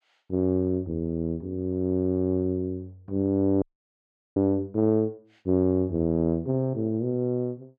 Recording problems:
audio freezing; at 3.5 s for 0.5 s

